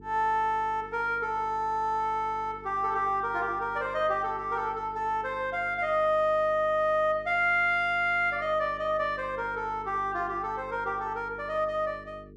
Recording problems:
hum; 50 Hz, harmonics up to 450 Hz, SNR 21 dB

